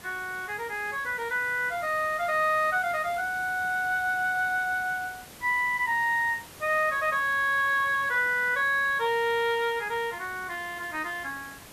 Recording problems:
hiss; slope -3 dB per octave, SNR 19 dB

